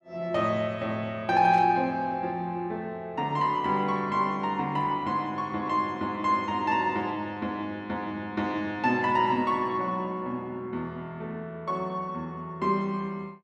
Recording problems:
burst of static; at 1.5 s; peak -12 dB vs average level

